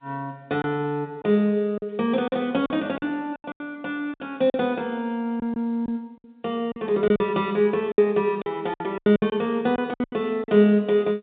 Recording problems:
phone line; 220 Hz to 3.7 kHz, G.711
lost packets; 11% of the sound replaced, filled with silence

